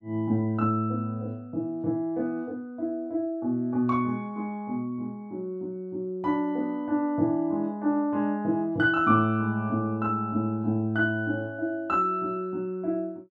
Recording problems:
none

